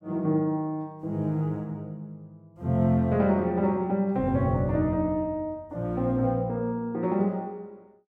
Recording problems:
none

